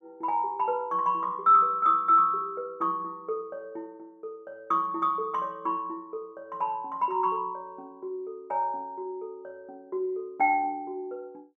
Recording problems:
none

